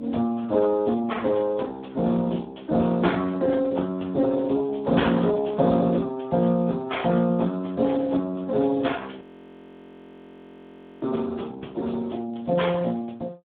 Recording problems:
phone line; 86 Hz to 3.6 kHz, Speex
audio freezing; at 9 s for 2 s

